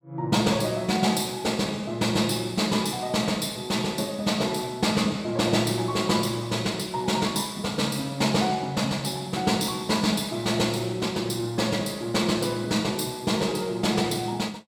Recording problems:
none

